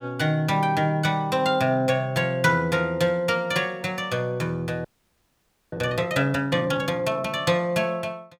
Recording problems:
audio freezing; at 5 s for 1 s

